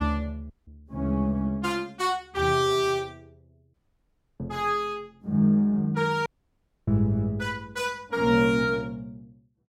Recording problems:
audio cutting out; at 0.5 s, at 3.5 s for 0.5 s and at 6.5 s for 0.5 s

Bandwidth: 16.5 kHz